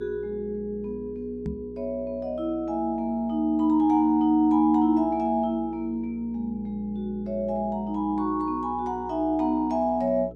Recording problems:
electrical hum; 60 Hz, harmonics up to 480 Hz, SNR 19 dB
microphone bump; at 1.5 s; peak -2 dB vs average level

